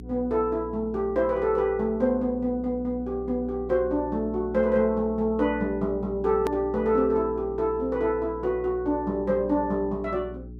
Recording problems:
hum; 60 Hz, harmonics up to 420 Hz, SNR 15 dB
hard cut with a click; at 6.5 s

